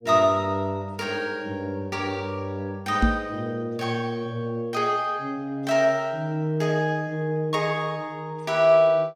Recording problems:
knock on the microphone; at 3 s; peak +7 dB vs average level

